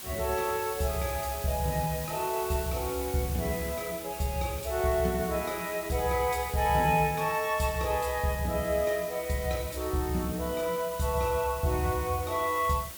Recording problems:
hiss; slope 0 dB per octave, SNR 10 dB

